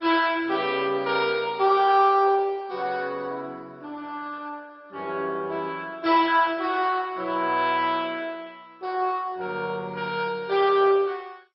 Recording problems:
lossy codec; MP2, log-spectral distance 3 dB, nothing above 4.8 kHz

